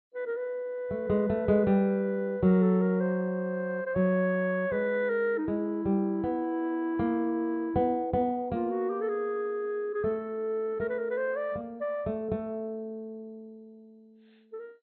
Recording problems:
codec artefacts; MP2, log-spectral distance 2 dB, nothing above 3.6 kHz

